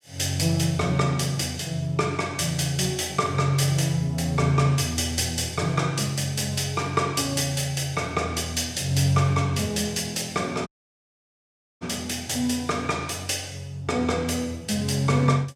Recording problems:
dropout; at 11 s for 1 s

